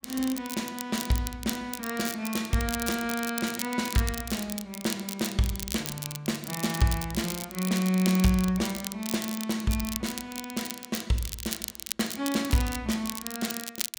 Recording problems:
crackling; vinyl, SNR 6 dB

